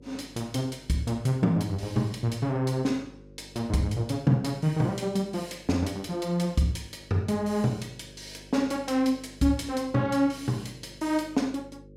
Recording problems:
hum; 50 Hz, harmonics up to 550 Hz, SNR 23 dB

